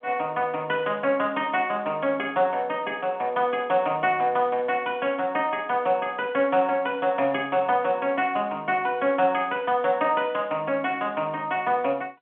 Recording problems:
telephone audio; 220 Hz to 3.3 kHz, G.711

